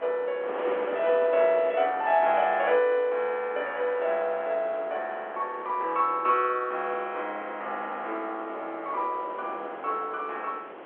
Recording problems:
telephone audio; 320 Hz to 3.3 kHz, G.711
wind noise; below 1.2 kHz, SNR 14 dB

